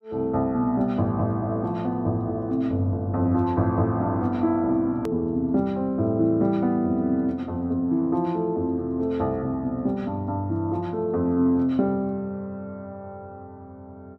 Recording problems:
hard cut with a click; at 5 s

